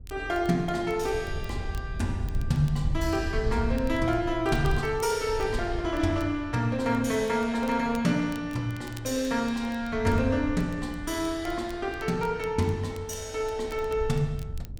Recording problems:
wind noise; below 88 Hz, SNR 9 dB
crackle; vinyl, SNR 25 dB

